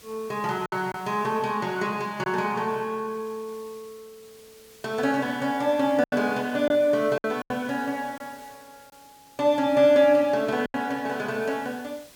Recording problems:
hiss; slope -1 dB per octave, SNR 25 dB
lost packets; 4% of the sound replaced, filled with silence

